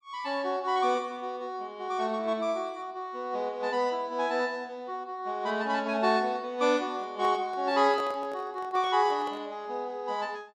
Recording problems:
handling noise; from 7 to 9.5 s; peak -6 dB vs average level

